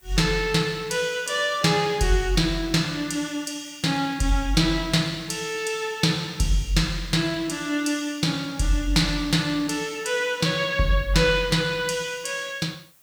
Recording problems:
hiss; slope -1 dB per octave, SNR 29 dB

